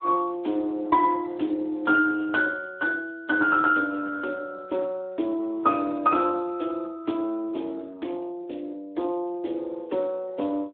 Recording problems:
telephone audio; 240 Hz to 3.4 kHz, Speex

